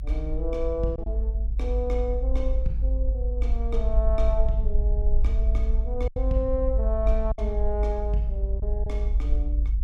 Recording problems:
low-frequency rumble; below 52 Hz, strongest tone 52 Hz, SNR -5 dB
packet loss; 2% of the sound replaced, filled with silence

